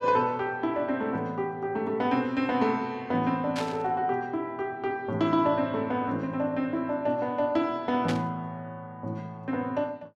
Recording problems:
burst of static; at 3.5 s and at 8 s; peak -2 dB vs average level

